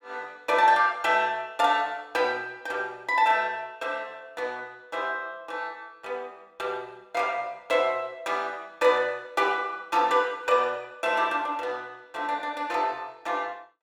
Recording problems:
none

